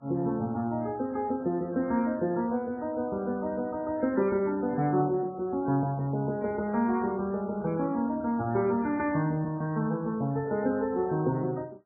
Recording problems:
lossy compression; MP3, then MP3, log-spectral distance 2 dB, nothing above 2.1 kHz

